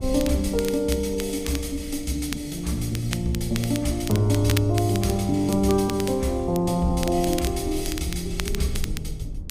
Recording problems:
rumble; below 88 Hz, SNR 13 dB
crackling; vinyl, SNR 12 dB

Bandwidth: 15 kHz